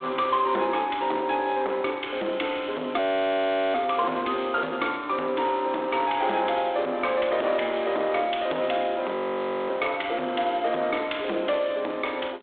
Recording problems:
telephone audio; 260 Hz to 3.6 kHz, G.726
distortion; soft clipping, signal-to-distortion ratio 12 dB
audio freezing; at 3 s for 1 s and at 9 s for 0.5 s

